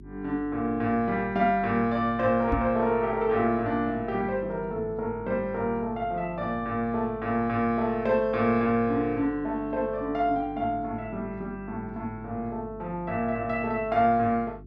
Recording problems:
electrical hum; 50 Hz, harmonics up to 400 Hz, SNR 19 dB
microphone bump; at 2.5 s; peak +2 dB vs average level

